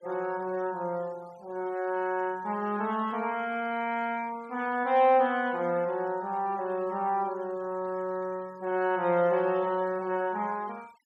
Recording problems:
denoising artefacts; signal-to-artefact ratio 25 dB

